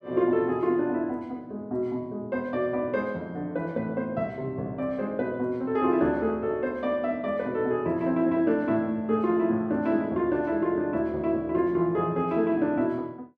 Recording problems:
none

